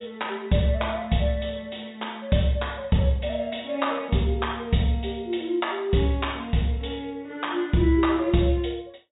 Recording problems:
treble cut off; nothing above 4 kHz

